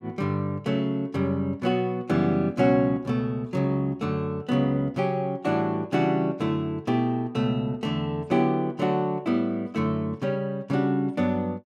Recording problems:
none

